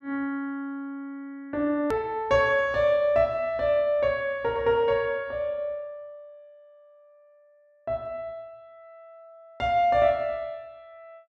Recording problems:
hard cut with a click; at 2 s

